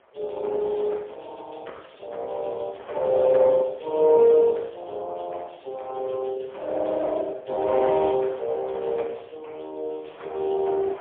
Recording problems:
phone line; 340 Hz to 3.5 kHz, AMR-NB, then MP3
wind on the microphone; below 1.2 kHz, SNR 23 dB

